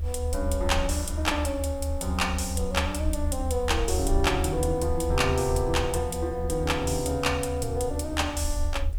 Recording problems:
hum; 60 Hz, harmonics up to 2.6 kHz, SNR 27 dB
hiss; SNR 30 dB
rumble; below 78 Hz, SNR 4 dB

